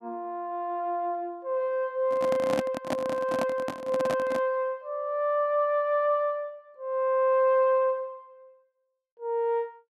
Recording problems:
handling noise; from 2 to 4.5 s; peak +1 dB vs average level

